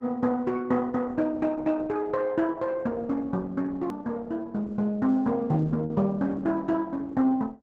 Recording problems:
codec artefacts; Opus, log-spectral distance 2 dB, nothing above 14.6 kHz
edit click; at 4 s

